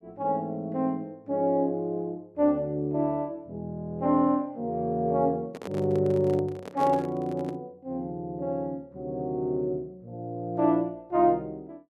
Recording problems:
handling noise; from 5.5 to 7.5 s; peak -5 dB vs average level

